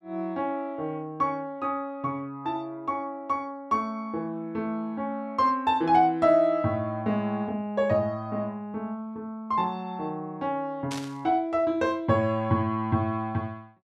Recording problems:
static burst; at 11 s; peak -5 dB vs average level

